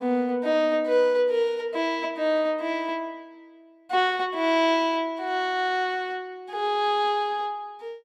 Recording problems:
none

